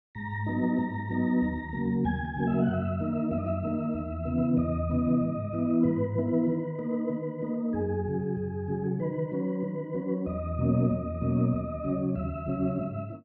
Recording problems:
none

